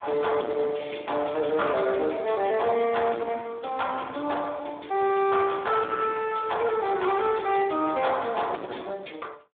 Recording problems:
telephone audio; 240 Hz to 3.6 kHz, Speex
distortion; soft clipping, signal-to-distortion ratio 9 dB

